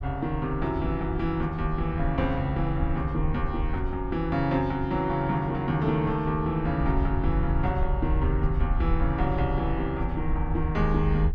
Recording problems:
rumble; below 70 Hz, SNR 5 dB

